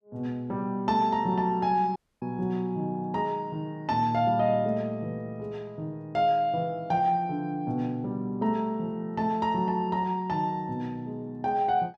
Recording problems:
audio cutting out; at 2 s

